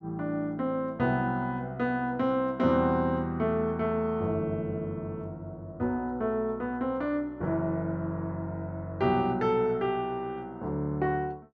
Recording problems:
none

